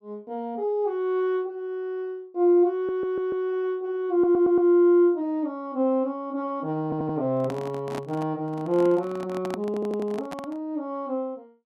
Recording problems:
stutter; 4 times, first at 2.5 s
handling noise; from 7.5 to 11 s; peak -5 dB vs average level

